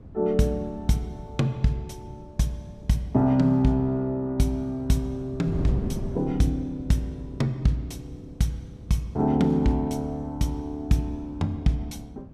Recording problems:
wind noise; below 220 Hz, SNR 15 dB

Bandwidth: 15.5 kHz